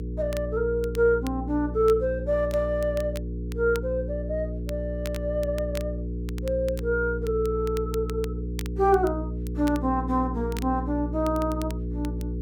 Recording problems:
electrical hum; 60 Hz, harmonics up to 480 Hz, SNR 5 dB
crackling; vinyl, SNR 20 dB

